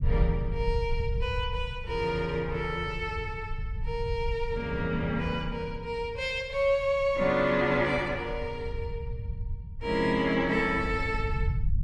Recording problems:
low-frequency rumble; below 90 Hz, SNR 8 dB

